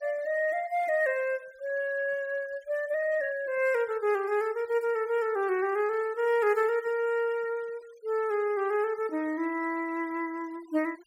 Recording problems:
denoising artefacts; signal-to-artefact ratio 26 dB

